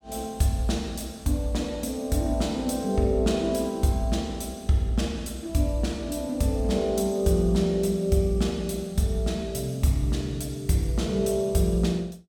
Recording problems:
none

